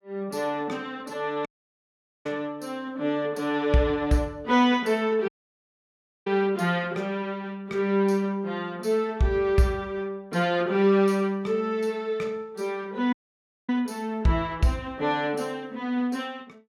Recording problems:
dropout; at 1.5 s for 1 s, at 5.5 s for 1 s and at 13 s for 0.5 s

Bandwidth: 17 kHz